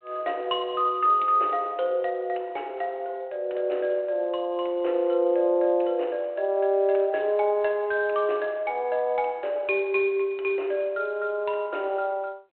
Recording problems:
phone line; 300 Hz to 3.1 kHz, G.726

